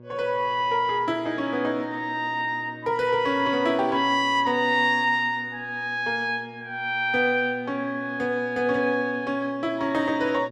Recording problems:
electrical hum; 60 Hz, harmonics up to 1.1 kHz, SNR 22 dB

